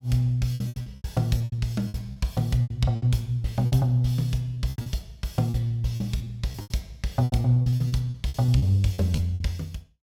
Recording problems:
lost packets; 18% of the sound replaced, filled with repeated pitch periods

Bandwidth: 17 kHz